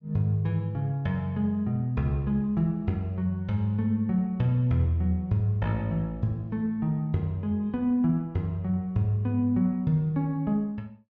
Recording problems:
none

